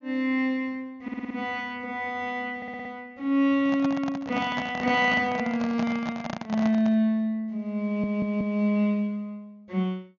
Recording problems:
treble cut off; nothing above 6.8 kHz
stutter; at 1 s, at 2.5 s and at 8 s
microphone handling noise; from 3.5 to 7 s; peak -2 dB vs average level

